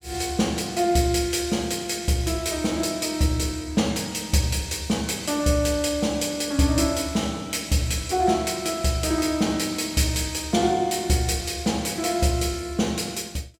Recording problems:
none

